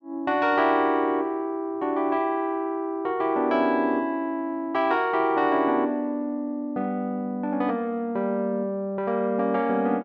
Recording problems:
none

